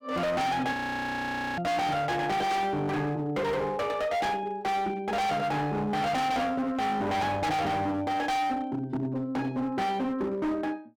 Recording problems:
distorted audio; hard clipping, signal-to-distortion ratio 6 dB
frozen audio; at 0.5 s for 1 s

